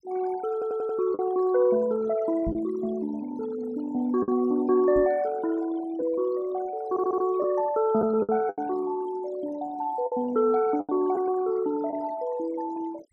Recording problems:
denoising artefacts; signal-to-artefact ratio 18 dB
packet loss; 4% of the sound replaced, filled with the last packet
audio stuttering; at 0.5 s and at 7 s
knock on the microphone; at 2.5 s and at 5 s; peak -4 dB vs average level

